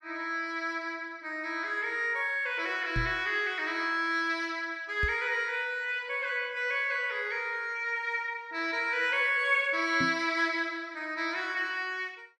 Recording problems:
microphone bump; at 3 s, at 5 s and at 10 s; peak 0 dB vs average level

